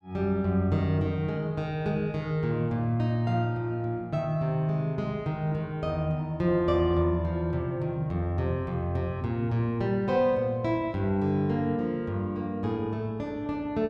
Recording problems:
none

